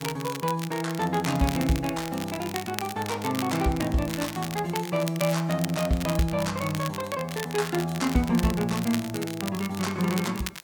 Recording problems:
background hiss; slope -3 dB per octave, SNR 30 dB
crackling; vinyl, SNR 10 dB

